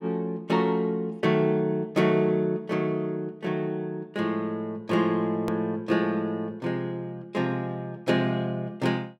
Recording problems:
click at an edit; at 5.5 s

